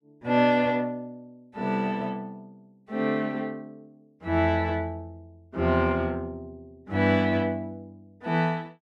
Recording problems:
none

